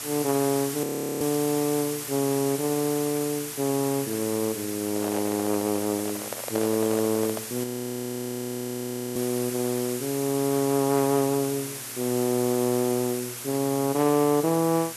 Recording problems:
hum; 60 Hz, harmonics up to 840 Hz, SNR 25 dB
background hiss; slope 0 dB per octave, SNR 7 dB
frozen audio; at 1 s and at 7.5 s for 1.5 s
microphone handling noise; from 5 to 7.5 s; peak -3 dB vs average level

